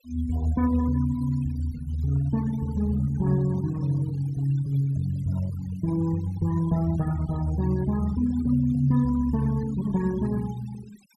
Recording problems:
denoising artefacts; signal-to-artefact ratio 20 dB

